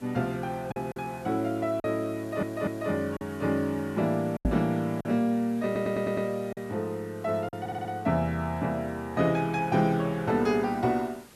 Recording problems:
background hiss; slope -3 dB per octave, SNR 24 dB
packet loss; 4% of the sound replaced, filled with silence
audio stuttering; at 2 s, at 5.5 s and at 7.5 s
knock on the microphone; at 4.5 s; peak +5 dB vs average level

